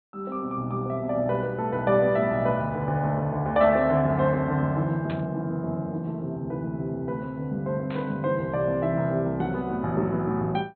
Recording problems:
low-pass filter; nothing above 4.2 kHz
burst of static; at 5 s and at 8 s; peak -10 dB vs average level

